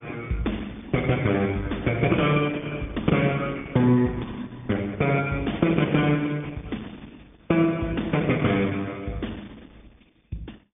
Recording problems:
treble missing; nothing above 3.6 kHz
codec artefacts; Opus, log-spectral distance 8 dB

